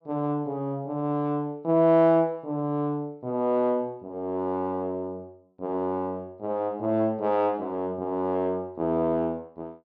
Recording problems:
none

